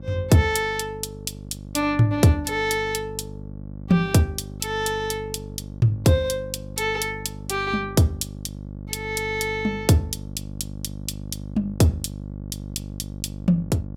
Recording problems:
mains hum; 50 Hz, harmonics up to 600 Hz, SNR 13 dB

